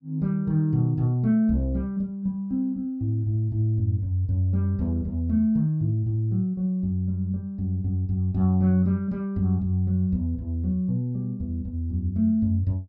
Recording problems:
none

